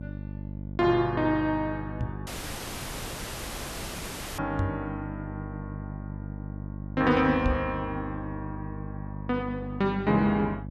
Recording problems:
hum; 50 Hz, harmonics up to 600 Hz, SNR 10 dB
microphone thump; at 2 s, at 4.5 s and at 7.5 s; peak +3 dB vs average level
dropout; at 2.5 s for 2 s

